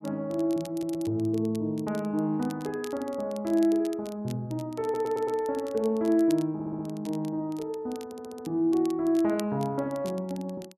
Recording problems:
crackling; vinyl, SNR 22 dB
stutter; 4 times, first at 0.5 s

